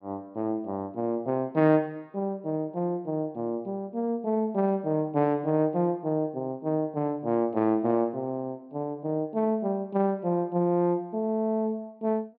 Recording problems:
low-pass filter; nothing above 5.5 kHz

